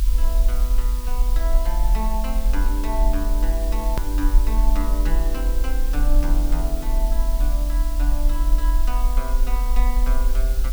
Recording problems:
background hiss; slope +3 dB per octave, SNR 7 dB
low-frequency rumble; below 44 Hz, SNR -9 dB
click at an edit; at 4 s

